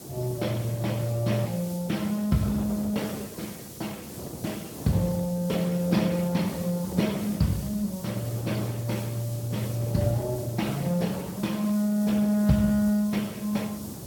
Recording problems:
lossy compression; MP2, then Speex, log-spectral distance 3 dB, nothing above 17.1 kHz
hiss; slope +6 dB per octave, SNR 16 dB
wind noise; below 520 Hz, SNR 13 dB

